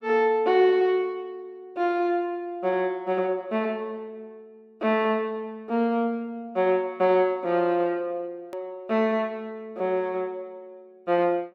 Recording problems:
edit click; at 8.5 s

